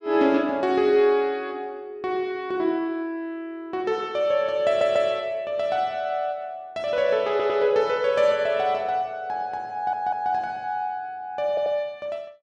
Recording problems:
stutter; 4 times, first at 4.5 s

